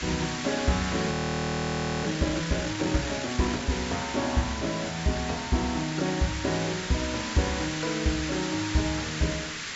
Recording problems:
low-pass filter; nothing above 8 kHz
background hiss; SNR 5 dB
crackling; from 0.5 to 2.5 s and at 7.5 s; loose cable, SNR 27 dB
audio freezing; at 1 s for 1 s

